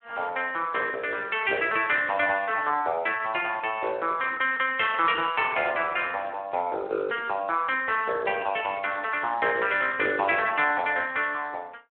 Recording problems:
telephone audio; 300 Hz to 3.4 kHz, Speex

